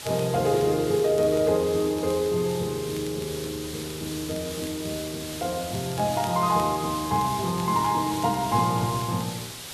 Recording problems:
background hiss; slope 0 dB per octave, SNR 10 dB
crackling; vinyl, SNR 25 dB

